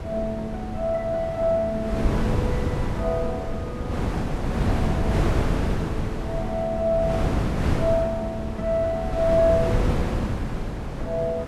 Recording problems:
wind on the microphone; below 320 Hz, SNR 1 dB

